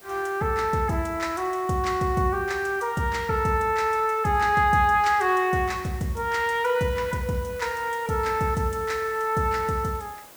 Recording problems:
hiss; slope -3 dB per octave, SNR 22 dB

